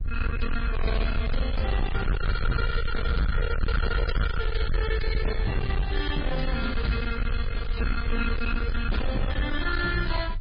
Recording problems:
lossy compression; MP3, log-spectral distance 3 dB, nothing above 4.2 kHz
distorted audio; hard clipping, signal-to-distortion ratio 6 dB
rumble; below 68 Hz, SNR 0 dB

